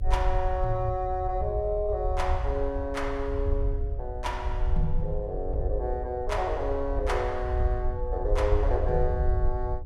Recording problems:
electrical hum; 60 Hz, harmonics up to 600 Hz, SNR 19 dB
low-frequency rumble; below 66 Hz, SNR 2 dB

